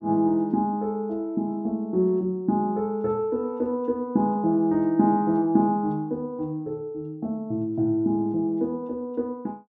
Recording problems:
none

